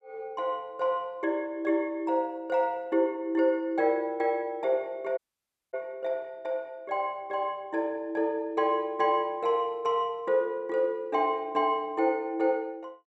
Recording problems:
dropout; at 5 s for 0.5 s

